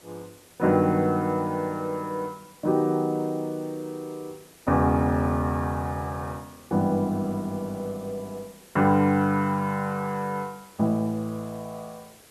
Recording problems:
hiss; slope -3 dB per octave, SNR 25 dB

